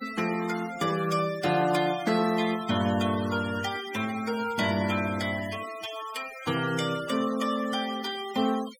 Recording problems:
noise reduction artefacts; signal-to-artefact ratio 14 dB

